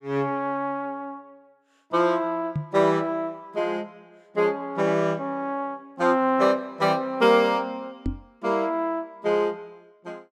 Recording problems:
microphone thump; at 2.5 s and at 8 s; peak 0 dB vs average level

